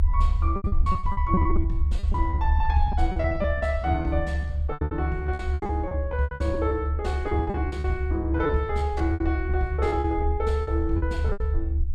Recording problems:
rumble; below 74 Hz, SNR -1 dB
packet loss; 18% of the sound replaced, filled with repeated pitch periods

